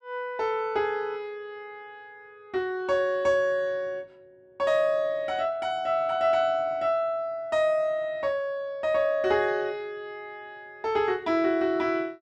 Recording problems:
none

